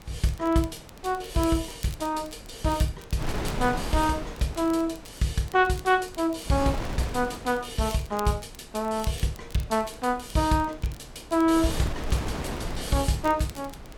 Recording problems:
wind on the microphone; below 620 Hz, SNR 11 dB
crackle; vinyl, SNR 23 dB

